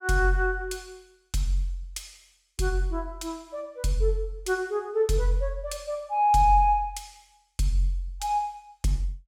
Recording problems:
none

